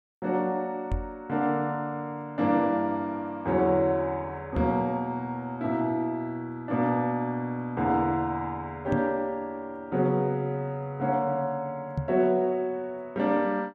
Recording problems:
microphone thump; 4 times, first at 1 s; peak +3 dB vs average level

